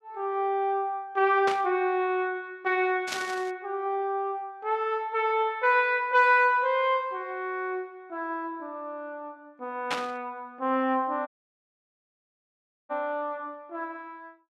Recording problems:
static burst; at 1.5 s, at 3 s and at 10 s; peak +1 dB vs average level
dropout; at 11 s for 1.5 s

